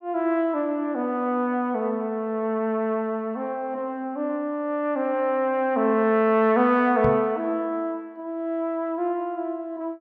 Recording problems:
microphone bump; at 7 s; peak 0 dB vs average level

